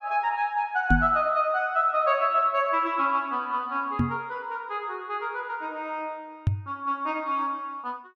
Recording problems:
microphone thump; at 1 s, at 4 s and at 6.5 s; peak +7 dB vs average level

